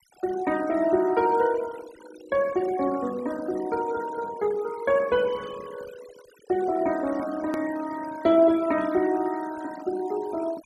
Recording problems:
noise reduction artefacts; signal-to-artefact ratio 17 dB
edit click; at 7.5 s

